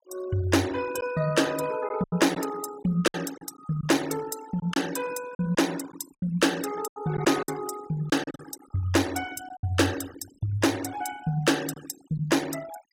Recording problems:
noise reduction artefacts; signal-to-artefact ratio 15 dB
lost packets; 6% of the sound replaced, filled with silence

